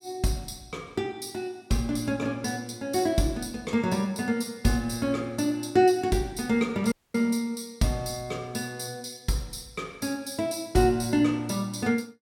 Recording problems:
dropout; at 7 s

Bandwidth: 17 kHz